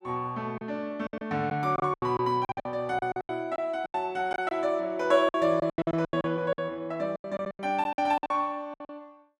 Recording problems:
lost packets; 17% of the sound replaced, filled with silence

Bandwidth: 12.5 kHz